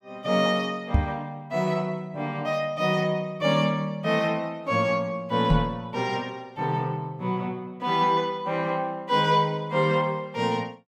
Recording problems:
microphone thump; at 1 s and at 5.5 s; peak +8 dB vs average level

